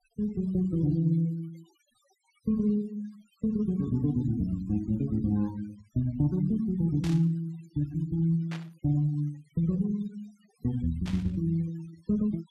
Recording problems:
noise reduction artefacts; signal-to-artefact ratio 24 dB
static burst; at 7 s, at 8.5 s and at 11 s; peak -9 dB vs average level

